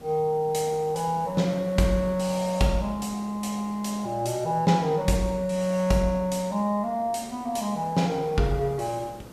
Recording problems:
hiss; SNR 21 dB

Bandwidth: 14.5 kHz